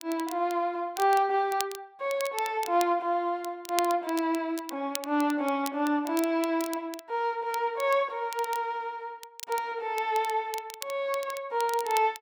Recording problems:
crackle; vinyl, SNR 13 dB

